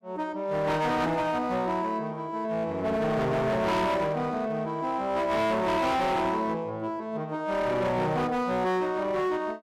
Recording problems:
distortion; hard clipping, signal-to-distortion ratio 8 dB

